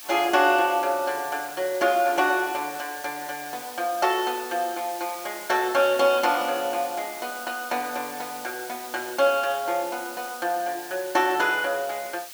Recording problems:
hiss; slope +3 dB per octave, SNR 13 dB

